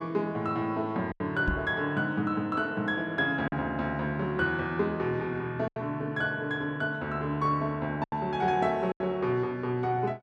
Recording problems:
packet loss; 4% of the sound replaced, filled with silence
microphone thump; at 1.5 s; peak +2 dB vs average level

